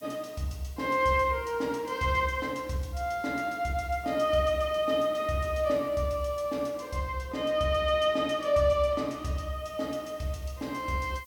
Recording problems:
background hiss; SNR 27 dB

